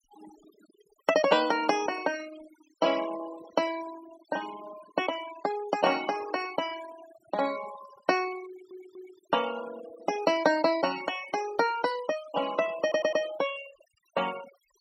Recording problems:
noise reduction artefacts; signal-to-artefact ratio 14 dB
stutter; at 8.5 s and at 13 s

